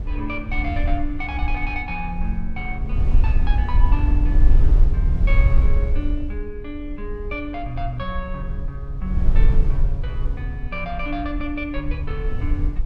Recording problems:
rumble; below 56 Hz, strongest tone 20 Hz, SNR -6 dB

